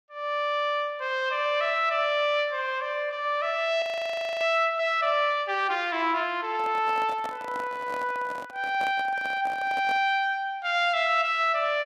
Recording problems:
audio freezing; at 4 s for 0.5 s
handling noise; from 6.5 to 10 s; peak -8 dB vs average level

